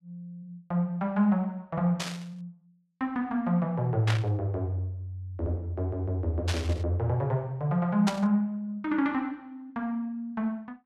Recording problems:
static burst; 4 times, first at 2 s; peak +2 dB vs average level

